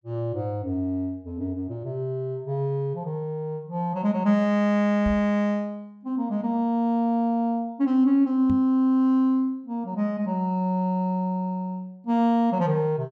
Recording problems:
knock on the microphone; at 5 s and at 8.5 s; peak -2 dB vs average level

